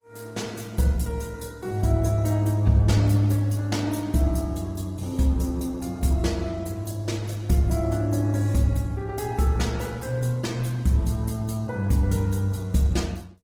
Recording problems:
lossy codec; Opus, log-spectral distance 3 dB, nothing above 18.5 kHz

